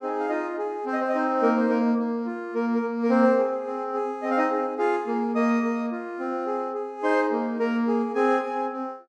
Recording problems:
none

